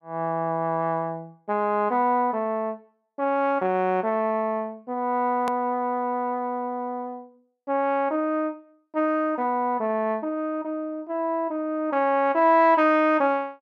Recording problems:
hard cut with a click; at 5.5 s

